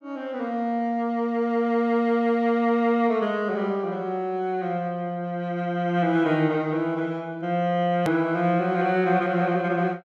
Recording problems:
hard cut with a click; at 8 s

